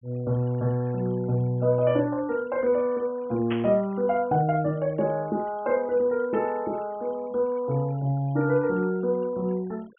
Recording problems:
treble cut off; nothing above 3.3 kHz
noise reduction artefacts; signal-to-artefact ratio 27 dB
burst of static; at 3.5 s; peak -5 dB vs average level

